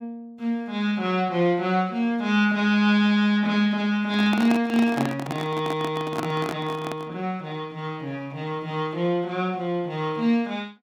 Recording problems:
handling noise; from 4 to 7 s; peak 0 dB vs average level

